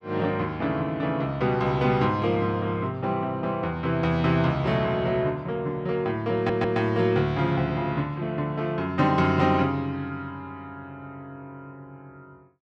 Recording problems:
stutter; at 6.5 s

